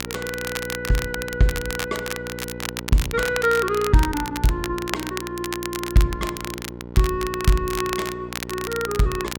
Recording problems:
hum; 60 Hz, harmonics up to 1.4 kHz, SNR 12 dB
crackling; vinyl, SNR 8 dB

